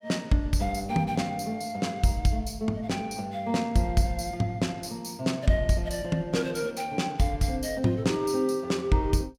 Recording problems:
none

